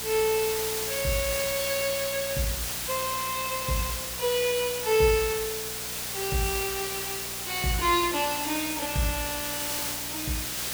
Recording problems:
electrical hum; 60 Hz, harmonics up to 840 Hz, SNR 19 dB
background hiss; slope 0 dB per octave, SNR 2 dB

